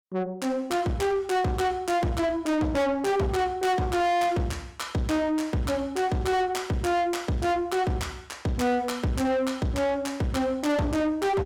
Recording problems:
distorted audio; soft clipping, signal-to-distortion ratio 6 dB

